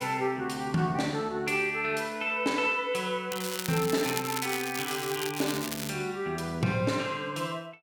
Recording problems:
crackle; from 3.5 to 6 s; loose cable, SNR 6 dB

